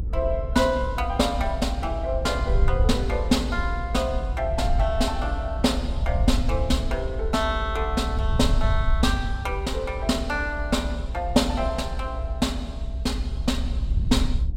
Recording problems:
rumble; below 64 Hz, SNR 5 dB
wind noise; below 78 Hz, SNR 6 dB

